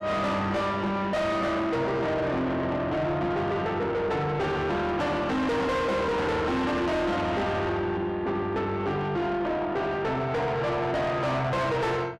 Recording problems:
distortion; soft clipping, signal-to-distortion ratio 5 dB

